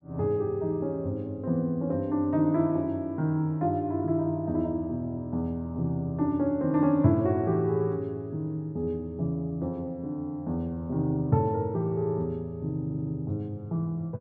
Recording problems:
stutter; at 13 s

